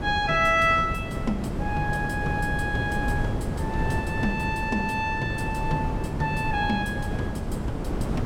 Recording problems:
wind noise; below 320 Hz, SNR 4 dB

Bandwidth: 17.5 kHz